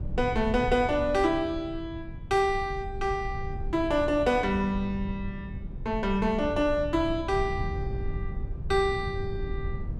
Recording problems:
low-frequency rumble; below 110 Hz, SNR 9 dB

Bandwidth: 14 kHz